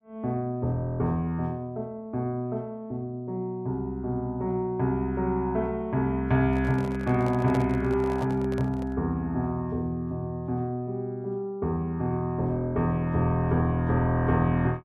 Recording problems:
microphone handling noise; from 6.5 to 9 s; peak -3 dB vs average level

